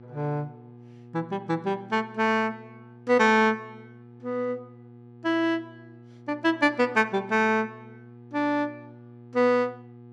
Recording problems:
hum; 60 Hz, harmonics up to 840 Hz, SNR 22 dB

